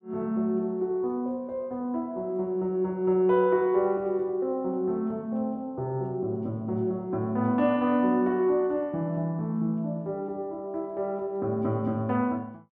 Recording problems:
none

